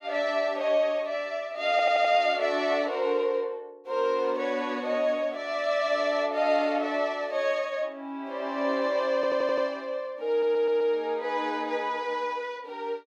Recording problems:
audio stuttering; at 1.5 s, at 9 s and at 10 s

